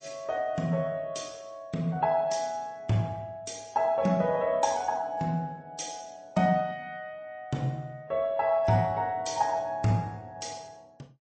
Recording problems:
lossy compression; MP3, log-spectral distance 2 dB, nothing above 8.2 kHz

